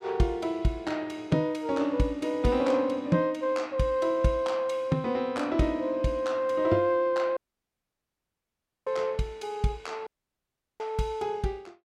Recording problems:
dropout; at 7.5 s for 1.5 s and at 10 s for 0.5 s

